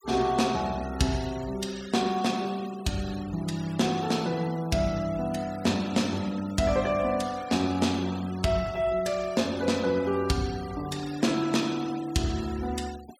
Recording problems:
noise reduction artefacts; signal-to-artefact ratio 18 dB

